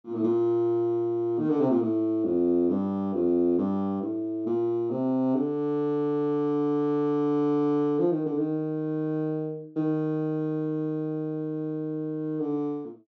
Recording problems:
treble cut off; nothing above 7.7 kHz

